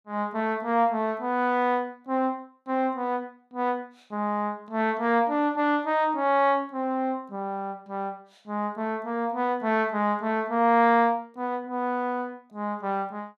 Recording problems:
none

